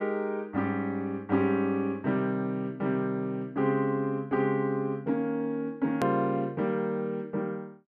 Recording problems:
edit click; at 6 s

